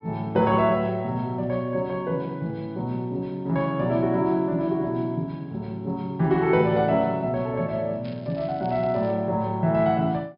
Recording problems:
treble cut off; nothing above 5.5 kHz
crackling; from 8 to 9 s; loose cable, SNR 27 dB

